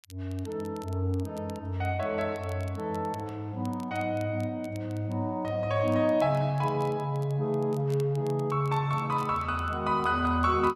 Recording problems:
crackle; vinyl, SNR 26 dB

